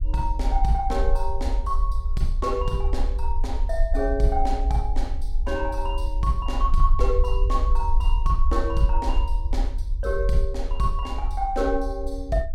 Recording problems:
rumble; below 50 Hz, strongest tone 20 Hz, SNR -1 dB

